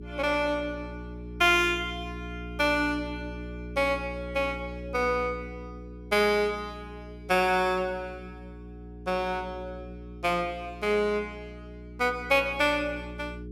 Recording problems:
hum; 60 Hz, harmonics up to 420 Hz, SNR 14 dB

